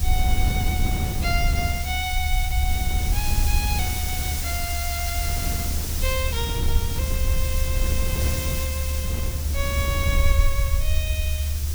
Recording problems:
background hiss; slope +2 dB per octave, SNR 0 dB
rumble; below 74 Hz, SNR -4 dB
wind on the microphone; below 140 Hz, SNR 1 dB

